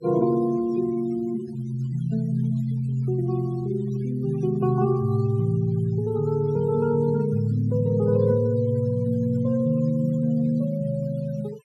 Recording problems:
denoising artefacts; signal-to-artefact ratio 24 dB

